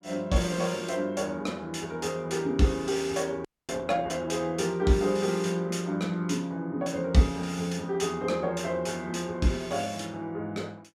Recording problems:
frozen audio; at 3.5 s

